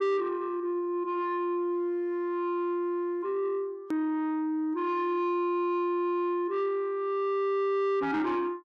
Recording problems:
distorted audio; soft clipping, signal-to-distortion ratio 10 dB
click at an edit; at 4 s

